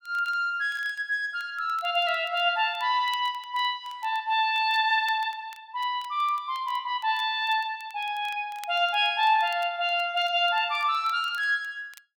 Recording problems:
crackling; vinyl, SNR 27 dB

